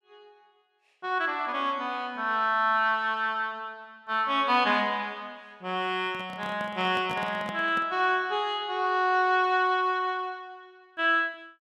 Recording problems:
handling noise; from 6 to 8 s; peak -7 dB vs average level

